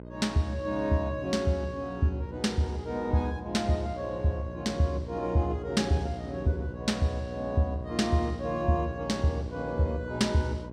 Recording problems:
hum; 60 Hz, harmonics up to 1.1 kHz, SNR 12 dB

